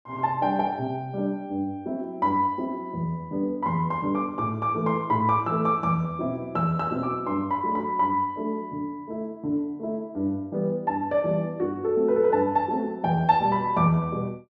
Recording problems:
none

